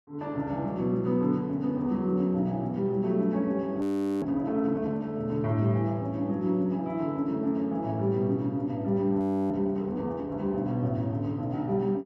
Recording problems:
frozen audio; at 4 s and at 9 s

